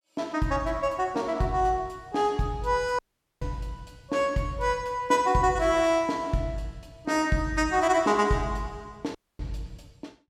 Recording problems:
audio cutting out; at 3 s and at 9 s

